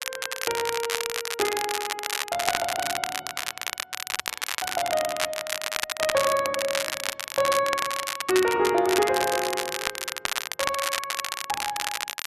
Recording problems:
crackling; vinyl, SNR 1 dB

